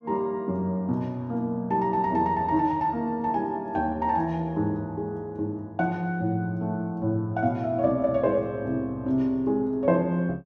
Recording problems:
none

